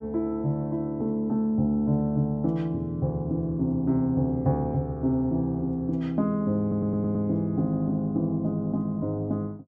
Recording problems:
stutter; at 6.5 s

